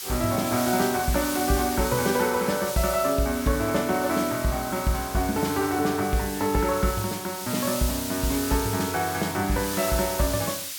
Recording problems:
background hiss; slope +4 dB per octave, SNR 7 dB

